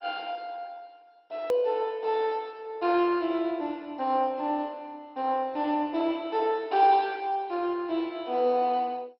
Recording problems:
lossy compression; MP2, log-spectral distance 2 dB, nothing above 19.5 kHz
hard cut with a click; at 1.5 s

